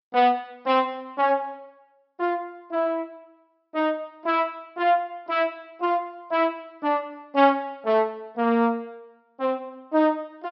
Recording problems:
treble cut off; nothing above 5.6 kHz

